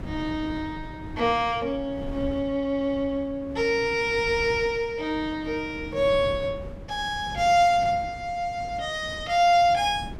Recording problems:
wind noise; below 260 Hz, SNR 16 dB

